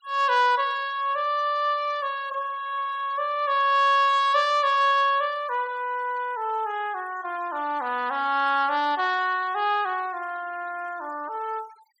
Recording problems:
noise reduction artefacts; signal-to-artefact ratio 25 dB

